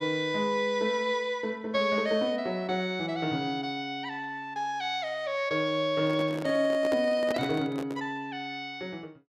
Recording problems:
handling noise; from 6 to 8 s; peak -1 dB vs average level

